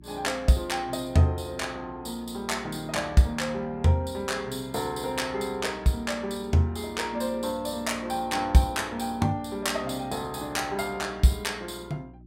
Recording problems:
hum; 60 Hz, harmonics up to 360 Hz, SNR 22 dB

